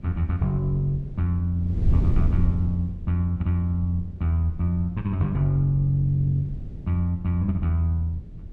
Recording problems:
wind on the microphone; below 110 Hz, SNR 8 dB

